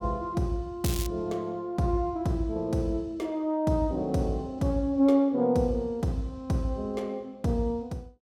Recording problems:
crackle; at 1 s; loose cable, SNR 9 dB

